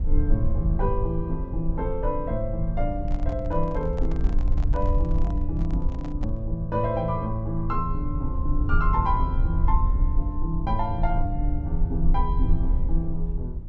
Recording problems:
treble cut off; nothing above 8 kHz
low-frequency rumble; below 60 Hz, SNR -1 dB
microphone handling noise; from 3 to 6.5 s; peak -8 dB vs average level

